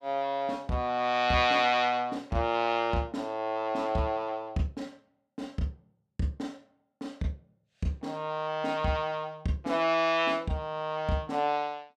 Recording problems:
none

